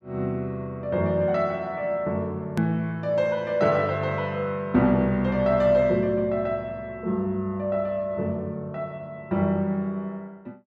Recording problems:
hard cut with a click; at 2.5 s

